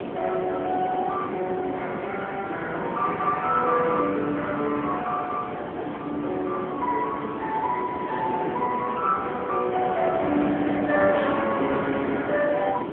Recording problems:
telephone audio; 240 Hz to 3.4 kHz, AMR-NB
wind noise; below 680 Hz, SNR 8 dB

